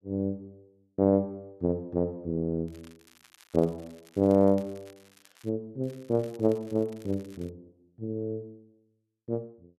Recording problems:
crackle; from 2.5 to 5.5 s and from 6 to 7.5 s; loose cable, SNR 27 dB

